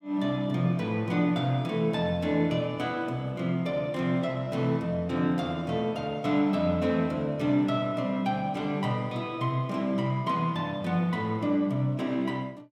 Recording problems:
none

